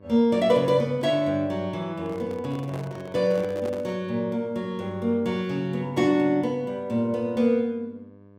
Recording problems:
mains hum; 50 Hz, harmonics up to 1.6 kHz, SNR 24 dB
microphone handling noise; from 2 to 4 s; peak -9 dB vs average level

